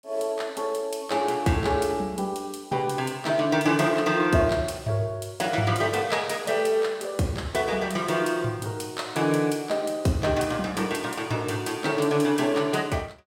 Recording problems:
none

